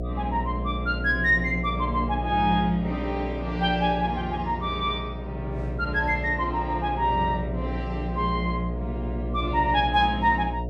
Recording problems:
hum; 60 Hz, harmonics up to 720 Hz, SNR 6 dB

